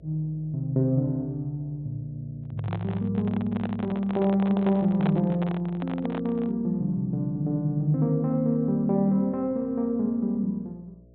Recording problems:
treble missing; nothing above 4 kHz
mains hum; 60 Hz, harmonics up to 660 Hz, SNR 26 dB
handling noise; from 2.5 to 6.5 s; peak -2 dB vs average level

